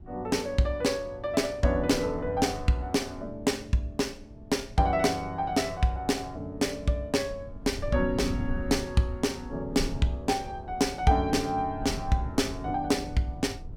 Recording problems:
wind noise; below 130 Hz, SNR 13 dB

